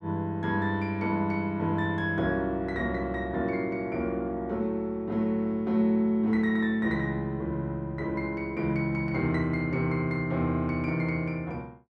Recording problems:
none

